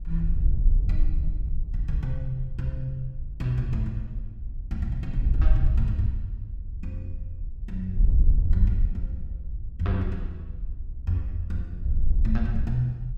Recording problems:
wind on the microphone; below 58 Hz, SNR -2 dB

